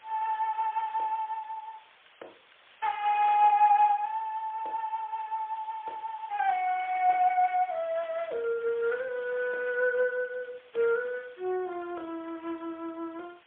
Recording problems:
phone line; 340 Hz to 3.4 kHz, AMR-NB, then MP3
background hiss; SNR 27 dB

